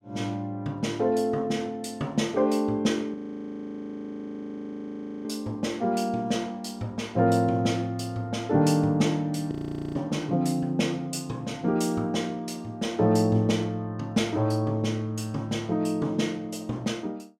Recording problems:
frozen audio; at 3 s for 2 s and at 9.5 s

